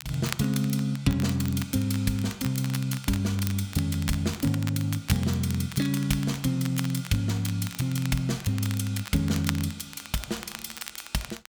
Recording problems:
crackle; vinyl, SNR 13 dB

